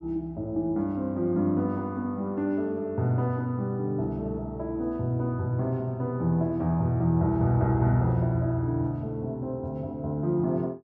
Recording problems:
none

